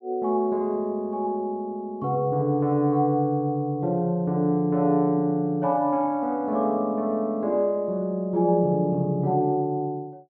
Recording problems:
none

